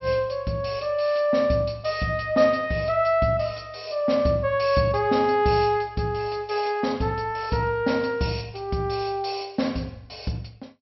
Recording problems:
low-pass filter; nothing above 5.7 kHz

